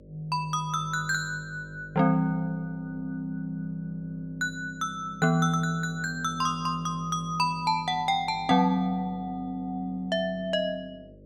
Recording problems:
hum; 50 Hz, harmonics up to 600 Hz, SNR 22 dB

